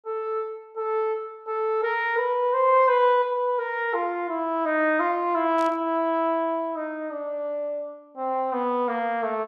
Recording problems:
static burst; at 5.5 s; peak -13 dB vs average level

